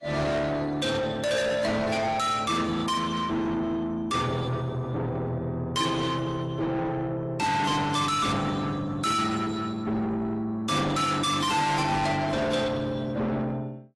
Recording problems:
lossy codec; AAC, log-spectral distance 3 dB, nothing above 11.3 kHz
distorted audio; soft clipping, signal-to-distortion ratio 6 dB

